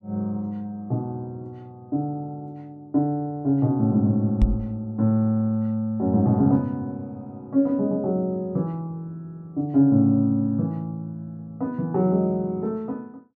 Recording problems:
microphone thump; at 4.5 s; peak +7 dB vs average level

